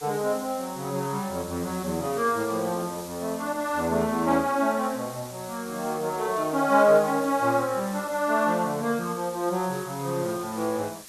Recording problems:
background hiss; slope +1 dB per octave, SNR 16 dB

